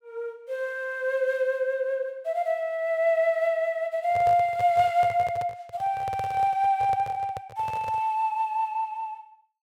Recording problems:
handling noise; from 4 to 8 s; peak -8 dB vs average level

